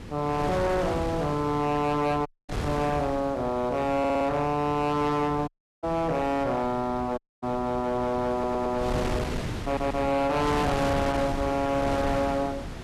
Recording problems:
distortion; hard clipping, uneven, signal-to-distortion ratio 7 dB
mains hum; 60 Hz, harmonics up to 960 Hz, SNR 21 dB
wind noise; below 780 Hz, SNR 8 dB
audio cutting out; at 2.5 s, at 5.5 s and at 7 s
stutter; at 4 s, at 8.5 s and at 9.5 s

